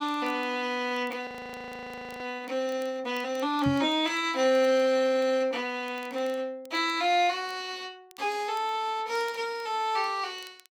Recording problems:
crackling; vinyl, SNR 29 dB
frozen audio; at 1.5 s for 1 s
knock on the microphone; at 3.5 s; peak +2 dB vs average level

